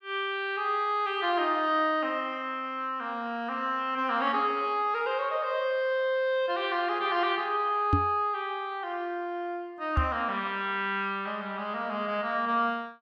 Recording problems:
microphone bump; at 8 s and at 10 s; peak +7 dB vs average level

